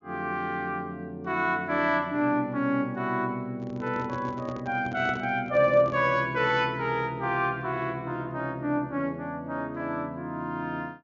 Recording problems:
treble missing; nothing above 7 kHz
microphone handling noise; from 3.5 to 6 s; peak -7 dB vs average level

